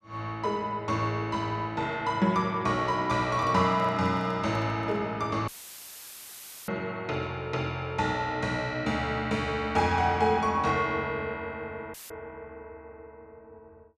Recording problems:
handling noise; from 3 to 5 s; peak -11 dB vs average level
audio cutting out; at 5.5 s for 1 s and at 12 s; filled with static

